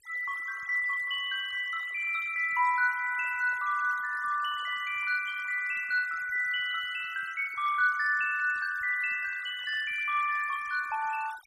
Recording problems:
noise reduction artefacts; signal-to-artefact ratio 14 dB

